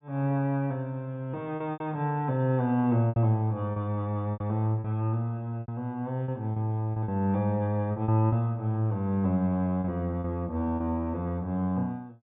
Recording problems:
treble cut off; nothing above 3.6 kHz
lost packets; 7% of the sound replaced, filled with repeated pitch periods

